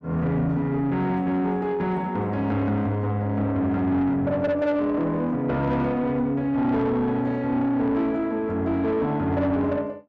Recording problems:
distortion; soft clipping, signal-to-distortion ratio 12 dB

